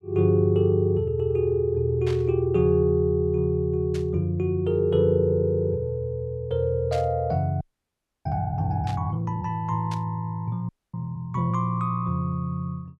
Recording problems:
burst of static; 5 times, first at 2 s; peak -10 dB vs average level
audio freezing; at 7.5 s for 0.5 s and at 11 s

